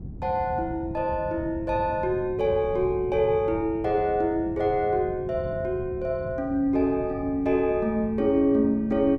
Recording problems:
wind noise; below 190 Hz, SNR 13 dB

